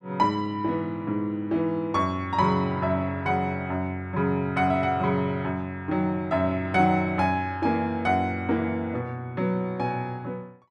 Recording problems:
none

